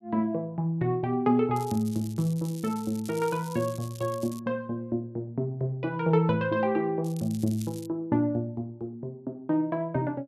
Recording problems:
crackle; from 1.5 to 4.5 s and at 7 s; loose cable, SNR 18 dB

